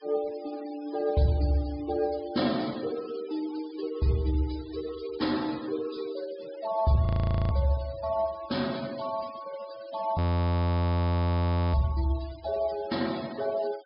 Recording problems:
treble cut off; nothing above 5.5 kHz
denoising artefacts; signal-to-artefact ratio 19 dB
frozen audio; at 7 s and at 10 s for 1.5 s

